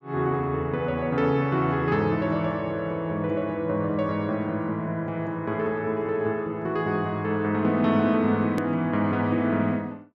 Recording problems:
hard cut with a click; at 8.5 s

